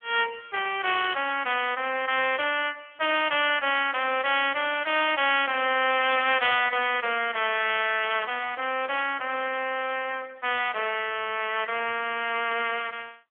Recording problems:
telephone audio; 300 Hz to 3.3 kHz, AMR-NB

